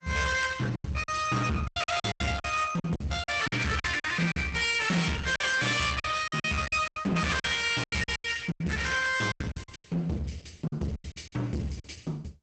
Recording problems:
lossy compression; Opus, log-spectral distance 5 dB, nothing above 8 kHz
distorted audio; hard clipping, uneven, signal-to-distortion ratio 6 dB
lost packets; 14% of the sound replaced, filled with silence

